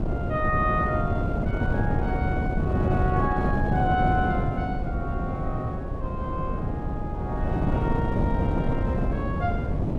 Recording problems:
wind on the microphone; below 270 Hz, SNR -3 dB

